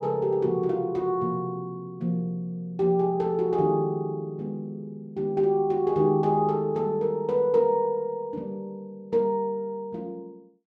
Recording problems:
none

